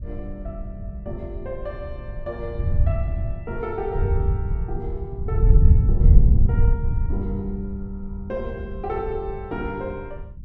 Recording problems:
wind on the microphone; below 90 Hz, SNR -11 dB

